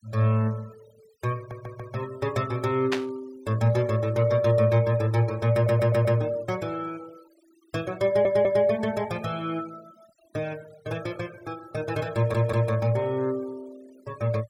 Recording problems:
noise reduction artefacts; signal-to-artefact ratio 24 dB
audio stuttering; 4 times, first at 1.5 s
burst of static; at 3 s; peak +1 dB vs average level

